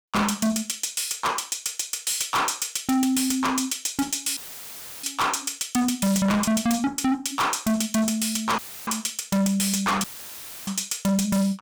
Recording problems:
distortion; hard clipping, signal-to-distortion ratio 6 dB
dropout; at 4.5 s for 0.5 s, at 8.5 s and at 10 s for 0.5 s; filled with static

